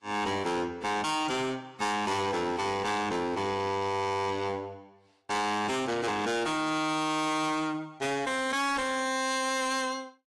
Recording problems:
lossy compression; AAC, log-spectral distance 3 dB, nothing above 11 kHz
distorted audio; hard clipping, uneven, signal-to-distortion ratio 6 dB

